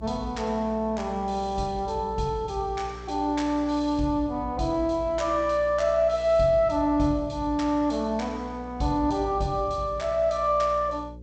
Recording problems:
codec artefacts; G.722, log-spectral distance 2 dB, nothing above 7.8 kHz
hum; 60 Hz, harmonics up to 540 Hz, SNR 17 dB

